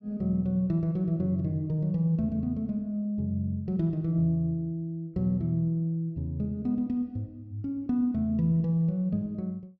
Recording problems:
none

